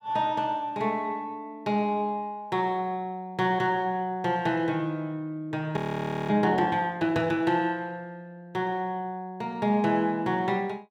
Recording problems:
audio freezing; at 6 s for 0.5 s

